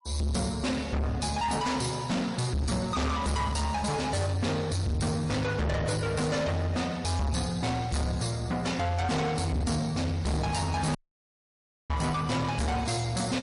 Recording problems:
codec artefacts; MP3, log-spectral distance 4 dB, nothing above 10.4 kHz
distorted audio; soft clipping, signal-to-distortion ratio 6 dB
dropout; at 11 s for 1 s

